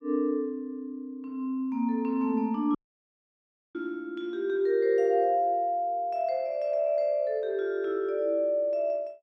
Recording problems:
audio cutting out; at 3 s for 1 s

